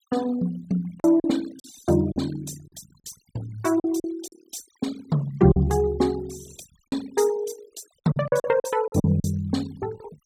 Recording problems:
noise reduction artefacts; signal-to-artefact ratio 22 dB
lost packets; 8% of the sound replaced, filled with silence

